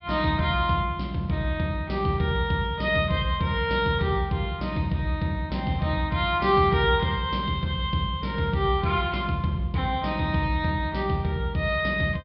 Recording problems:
low-pass filter; nothing above 5.2 kHz

